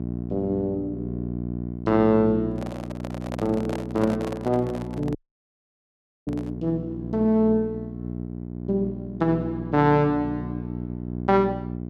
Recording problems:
hum; 60 Hz, harmonics up to 720 Hz, SNR 8 dB
microphone handling noise; from 2.5 to 6.5 s; peak -4 dB vs average level
audio cutting out; at 5 s for 1 s

